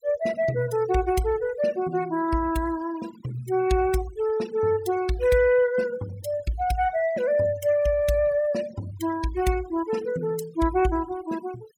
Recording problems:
denoising artefacts; signal-to-artefact ratio 19 dB

